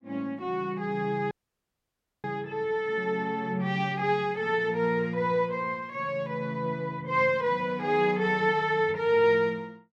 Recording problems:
dropout; at 1.5 s for 1 s

